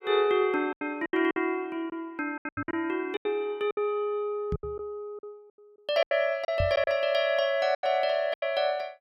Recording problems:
lost packets; 12% of the sound replaced, filled with silence
microphone bump; at 2.5 s, at 4.5 s and at 6.5 s; peak +1 dB vs average level

